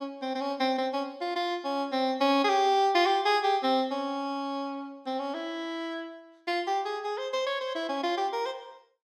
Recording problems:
none

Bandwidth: 14.5 kHz